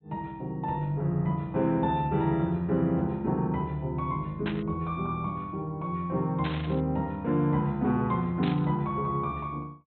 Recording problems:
treble missing; nothing above 4.1 kHz
static burst; at 4.5 s, at 6.5 s and at 8.5 s; peak -3 dB vs average level

